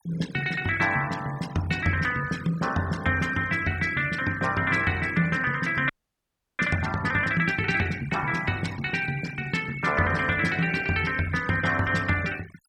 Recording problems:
denoising artefacts; signal-to-artefact ratio 16 dB
audio freezing; at 6 s for 0.5 s

